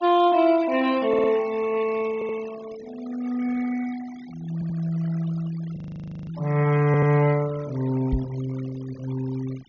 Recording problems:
treble missing; nothing above 6.7 kHz
noise reduction artefacts; signal-to-artefact ratio 19 dB
stutter; 4 times, first at 1 s
audio freezing; at 6 s for 0.5 s
knock on the microphone; at 8 s; peak +2 dB vs average level

